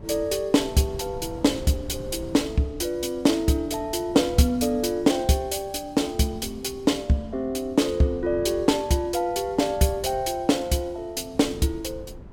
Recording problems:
wind on the microphone; below 220 Hz, SNR 18 dB

